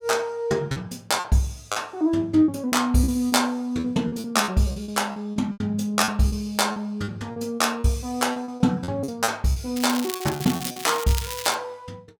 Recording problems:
lost packets; 12% of the sound replaced, filled with repeated pitch periods
crackling; from 10 to 12 s; loose cable, SNR 8 dB

